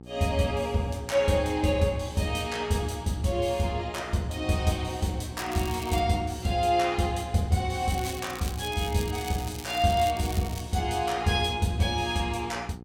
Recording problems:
hum; 60 Hz, harmonics up to 960 Hz, SNR 17 dB
crackle; at 5.5 s and from 8 to 11 s; loose cable, SNR 14 dB

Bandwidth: 16.5 kHz